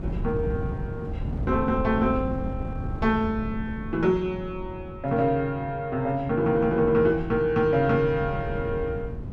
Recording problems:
wind on the microphone; below 190 Hz, SNR 9 dB

